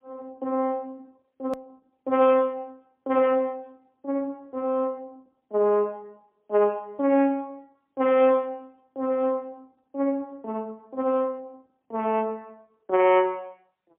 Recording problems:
phone line; 220 Hz to 3.4 kHz, AMR-NB, then MP3
click at an edit; at 1.5 s

